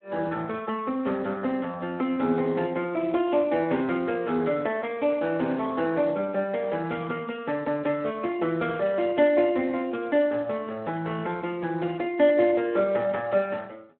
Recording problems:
phone line; 170 Hz to 3.3 kHz, Speex

